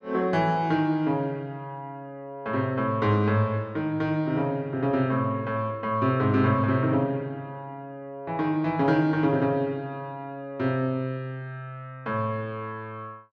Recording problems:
none

